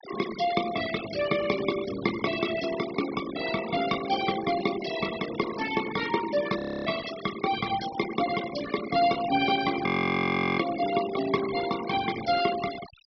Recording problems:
low-pass filter; nothing above 5.5 kHz
noise reduction artefacts; signal-to-artefact ratio 10 dB
audio freezing; at 6.5 s and at 10 s for 0.5 s

